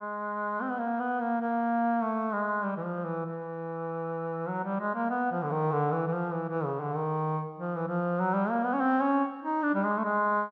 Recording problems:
treble missing; nothing above 8 kHz

